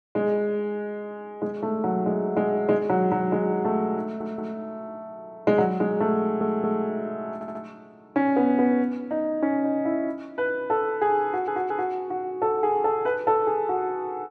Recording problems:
audio stuttering; 4 times, first at 4 s

